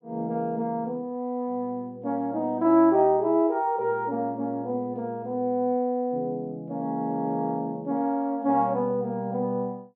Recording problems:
none

